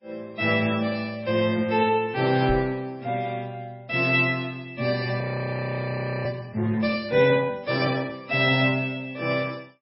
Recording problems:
lossy compression; MP3, log-spectral distance 3 dB, nothing above 4.8 kHz
microphone bump; at 2.5 s; peak -2 dB vs average level
audio freezing; at 5 s for 1 s

